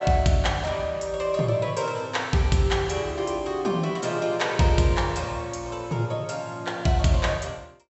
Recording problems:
treble cut off; nothing above 7.8 kHz

